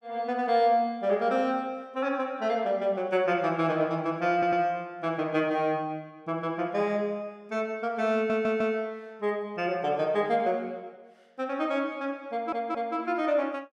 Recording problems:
stutter; at 4.5 s, at 8 s and at 12 s

